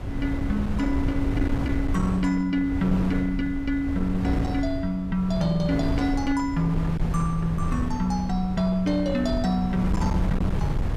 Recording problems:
distorted audio; hard clipping, signal-to-distortion ratio 12 dB
wind on the microphone; below 160 Hz, SNR 4 dB

